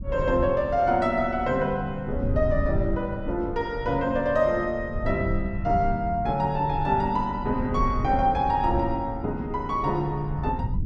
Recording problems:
low-frequency rumble; below 110 Hz, SNR 8 dB

